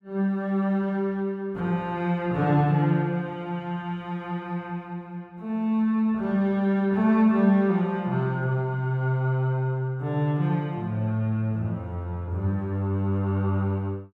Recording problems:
none

